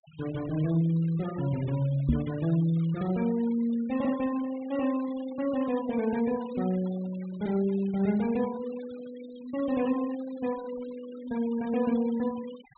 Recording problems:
low-pass filter; nothing above 4 kHz
noise reduction artefacts; signal-to-artefact ratio 19 dB
knock on the microphone; at 2 s; peak +8 dB vs average level

